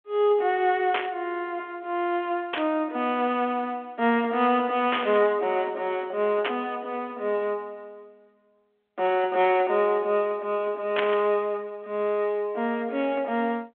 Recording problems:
phone line; 260 Hz to 3.4 kHz, G.726
static burst; 5 times, first at 1 s; peak +2 dB vs average level

